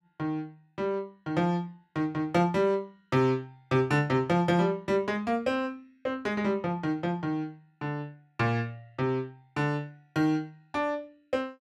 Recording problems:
none

